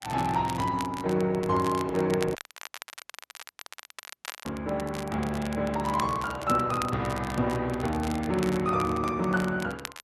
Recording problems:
lossy compression; Opus, log-spectral distance 3 dB
crackle; vinyl, SNR 15 dB
audio cutting out; at 2.5 s for 2 s

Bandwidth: 12.5 kHz